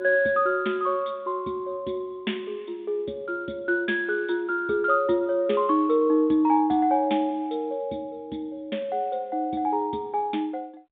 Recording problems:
telephone audio; 170 Hz to 3.7 kHz, G.726

